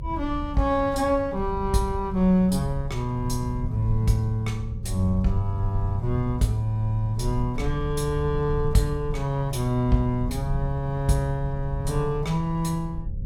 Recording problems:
hum; 60 Hz, harmonics up to 540 Hz, SNR 29 dB
low-frequency rumble; below 96 Hz, SNR 8 dB

